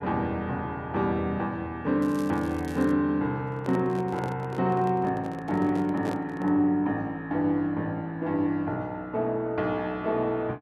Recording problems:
crackle; at 2 s; loose cable, SNR 23 dB
handling noise; from 3.5 to 6.5 s; peak -3 dB vs average level

